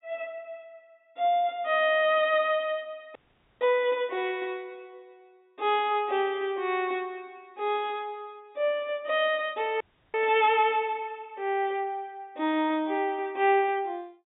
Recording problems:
treble missing; nothing above 4 kHz
audio cutting out; at 3 s and at 10 s

